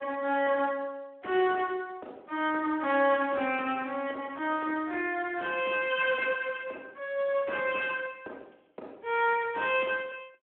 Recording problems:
telephone audio; 240 Hz to 3.3 kHz, Speex

